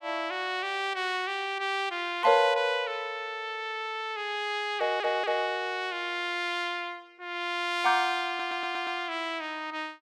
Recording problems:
audio stuttering; at 5 s and at 8.5 s

